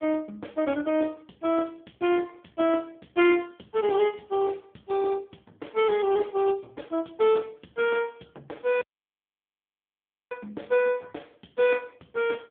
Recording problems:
phone line; 170 Hz to 3.3 kHz, AMR-NB
audio cutting out; at 9 s for 1.5 s

